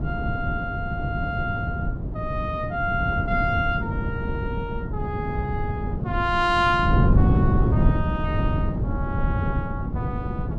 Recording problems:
wind on the microphone; below 190 Hz, SNR -2 dB

